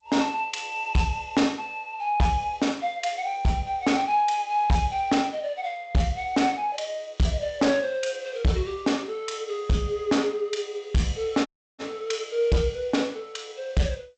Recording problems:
lossy codec; G.722, log-spectral distance 2 dB, nothing above 8 kHz
distorted audio; hard clipping, signal-to-distortion ratio 12 dB
dropout; at 11 s

